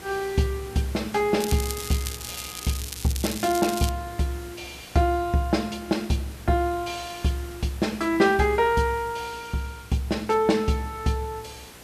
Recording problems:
hum; 60 Hz, harmonics up to 480 Hz, SNR 24 dB
background hiss; slope -2 dB per octave, SNR 19 dB
crackling; from 1.5 to 4 s; loose cable, SNR 8 dB

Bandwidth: 14 kHz